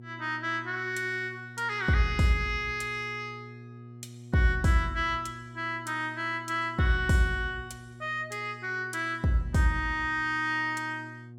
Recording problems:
hum; 60 Hz, harmonics up to 720 Hz, SNR 17 dB

